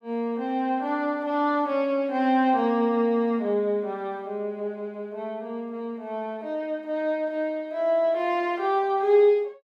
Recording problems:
none

